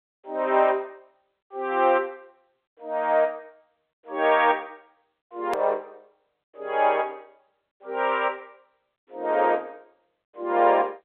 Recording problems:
phone line; 320 Hz to 3.7 kHz, G.711
click at an edit; at 5.5 s

